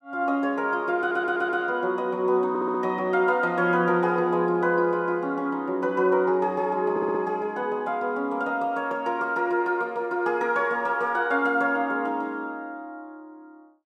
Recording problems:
stutter; at 1 s, at 2.5 s and at 7 s

